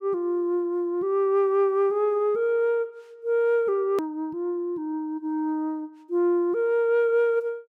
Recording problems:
click at an edit; at 4 s

